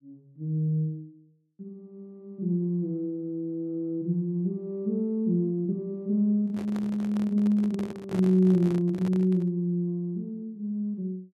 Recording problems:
microphone handling noise; from 6.5 to 9.5 s; peak -5 dB vs average level

